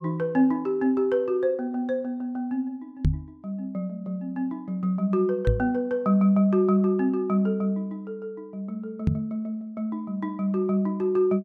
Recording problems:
microphone bump; at 3 s, at 5.5 s and at 9 s; peak +7 dB vs average level

